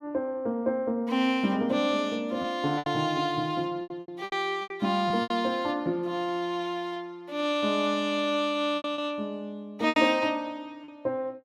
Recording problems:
packet loss; 7% of the sound replaced, filled with repeated pitch periods

